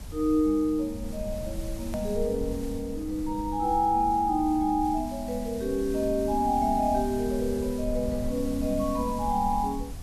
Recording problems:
hiss; SNR 20 dB
rumble; below 86 Hz, SNR 12 dB
click at an edit; at 2 s

